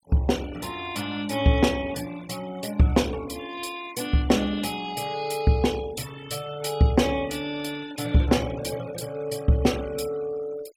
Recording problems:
denoising artefacts; signal-to-artefact ratio 18 dB

